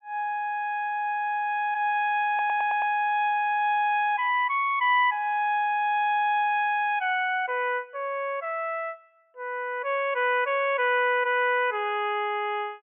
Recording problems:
low-pass filter; nothing above 3.3 kHz
stutter; at 2.5 s

